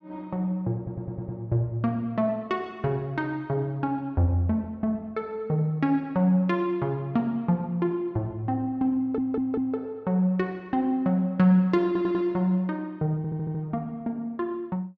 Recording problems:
stutter; 4 times, first at 1 s

